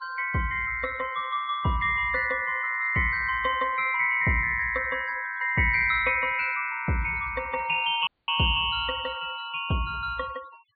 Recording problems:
treble cut off; nothing above 4.6 kHz
noise reduction artefacts; signal-to-artefact ratio 22 dB
audio cutting out; at 8 s

